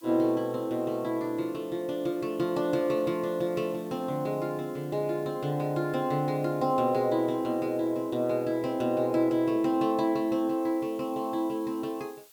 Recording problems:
hiss; slope +1 dB per octave, SNR 26 dB

